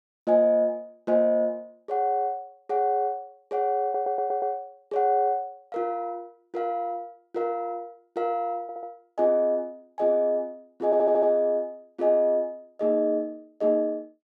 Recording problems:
stutter; at 4 s, at 8.5 s and at 11 s

